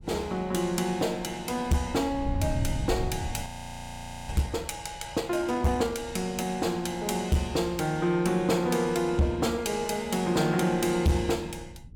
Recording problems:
distorted audio; hard clipping, signal-to-distortion ratio 12 dB
wind noise; below 130 Hz, SNR 11 dB
audio freezing; at 3.5 s for 1 s

